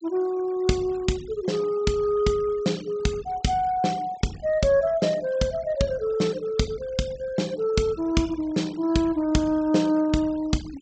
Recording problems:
low-pass filter; nothing above 8 kHz
denoising artefacts; signal-to-artefact ratio 22 dB

